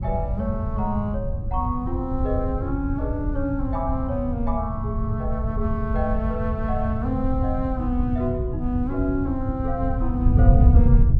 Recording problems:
wind on the microphone; below 100 Hz, SNR -2 dB

